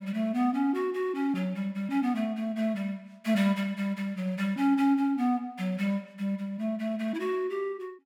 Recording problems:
none

